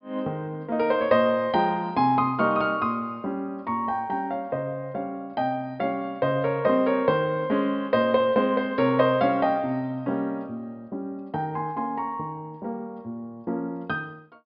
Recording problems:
treble missing; nothing above 5.5 kHz

